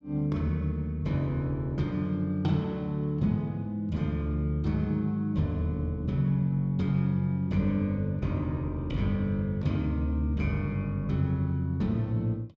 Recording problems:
none

